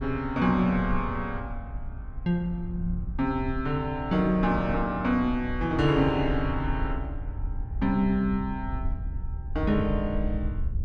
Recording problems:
wind noise; below 76 Hz, SNR 8 dB

